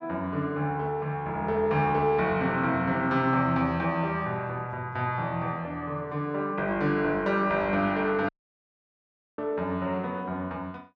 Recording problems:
dropout; at 8.5 s for 1 s

